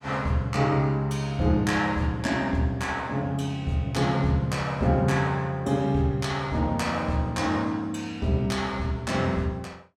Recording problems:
none

